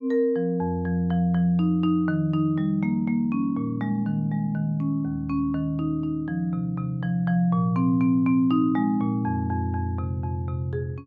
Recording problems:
none

